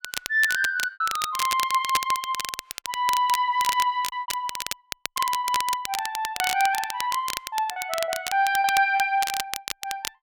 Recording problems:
crackling; vinyl, SNR 7 dB
packet loss; 9% of the sound replaced, filled with repeated pitch periods

